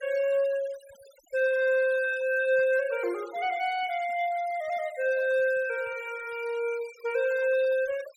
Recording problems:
denoising artefacts; signal-to-artefact ratio 22 dB

